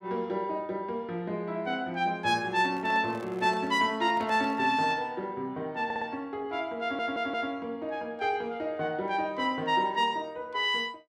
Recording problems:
handling noise; from 2.5 to 5 s; peak -10 dB vs average level
stutter; at 6 s and at 7 s

